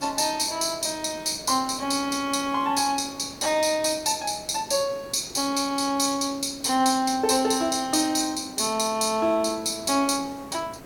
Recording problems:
hiss; slope -7 dB per octave, SNR 20 dB

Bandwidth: 17 kHz